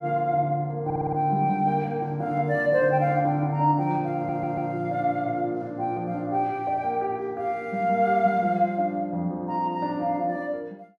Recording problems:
stutter; at 1 s and at 4 s

